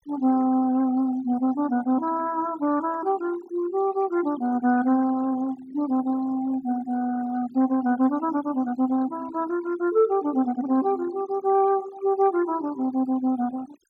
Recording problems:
noise reduction artefacts; signal-to-artefact ratio 20 dB

